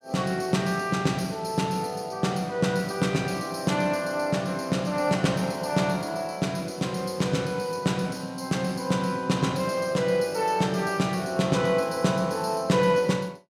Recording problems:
none

